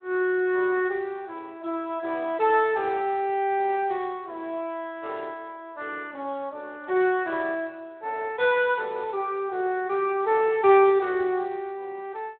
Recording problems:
phone line; 280 Hz to 3.9 kHz, Speex

